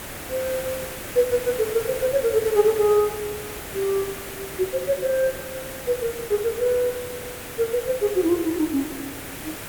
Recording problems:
hiss; slope -4 dB per octave, SNR 10 dB

